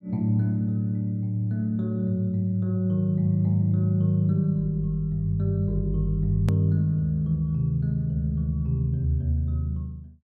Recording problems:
edit click; at 6.5 s

